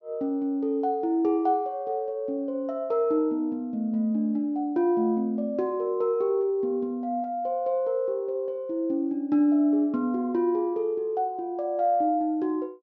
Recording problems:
low-pass filter; nothing above 6.3 kHz

